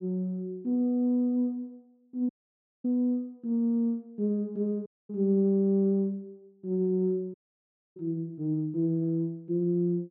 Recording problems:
audio cutting out; at 2.5 s for 0.5 s, at 5 s and at 7.5 s for 0.5 s

